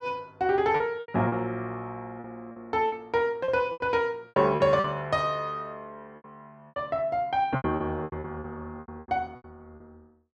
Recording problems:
lost packets; 13% of the sound replaced, filled with repeated pitch periods

